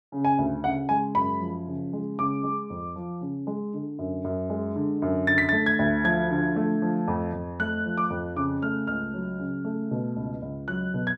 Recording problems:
none

